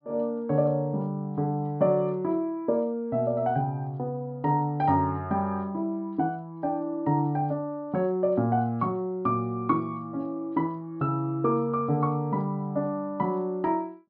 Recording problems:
treble missing; nothing above 5.5 kHz

